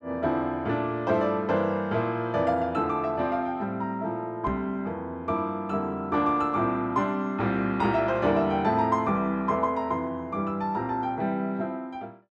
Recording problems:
microphone bump; at 4.5 s; peak -5 dB vs average level

